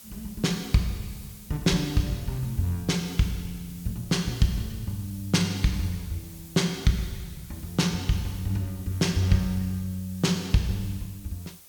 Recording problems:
hiss; SNR 18 dB

